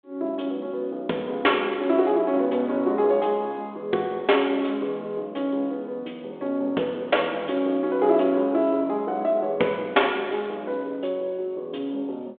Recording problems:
telephone audio; 240 Hz to 3.6 kHz, G.726

